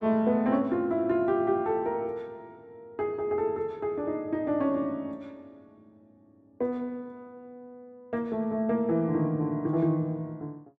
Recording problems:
none

